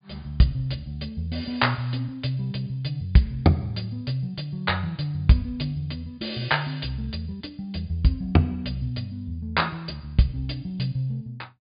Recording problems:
treble cut off; nothing above 4.9 kHz

